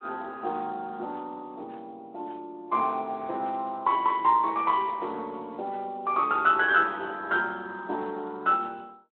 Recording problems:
phone line; 260 Hz to 4 kHz, Speex

